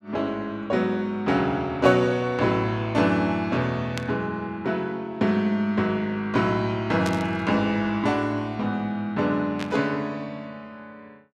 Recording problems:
static burst; at 4 s, at 7 s and at 9.5 s; peak -4 dB vs average level

